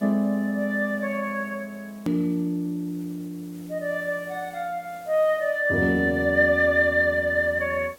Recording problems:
background hiss; SNR 27 dB
hard cut with a click; at 2 s

